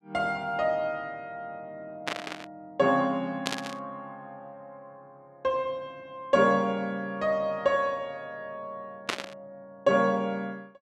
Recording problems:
static burst; at 2 s, at 3.5 s and at 9 s; peak +4 dB vs average level

